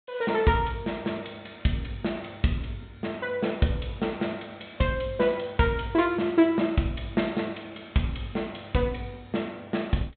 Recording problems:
low-pass filter; nothing above 4 kHz

